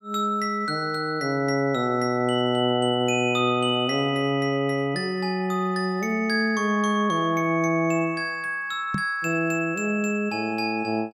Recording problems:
knock on the microphone; at 9 s; peak -1 dB vs average level

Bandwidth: 15.5 kHz